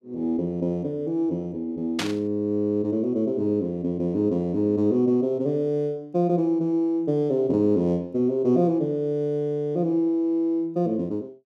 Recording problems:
static burst; at 2 s; peak +1 dB vs average level

